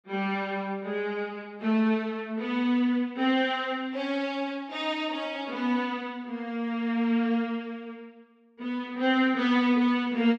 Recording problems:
none

